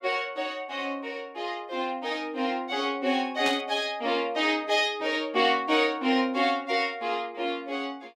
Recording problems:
burst of static; at 3.5 s; peak -2 dB vs average level

